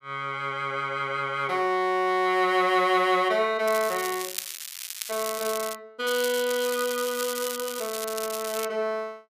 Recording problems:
crackling; from 3.5 to 6 s and from 6 to 8.5 s; loose cable, SNR 8 dB

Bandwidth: 15 kHz